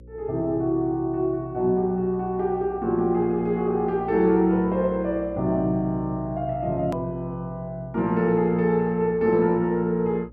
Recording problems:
hum; 60 Hz, harmonics up to 540 Hz, SNR 21 dB
hard cut with a click; at 7 s

